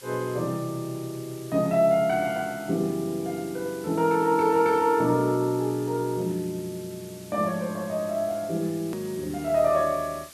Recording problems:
hiss; slope +1 dB per octave, SNR 20 dB
edit click; at 9 s

